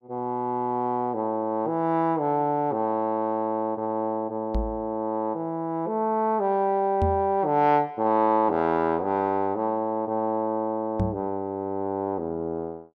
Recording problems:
knock on the microphone; at 4.5 s, at 7 s and at 11 s; peak +3 dB vs average level

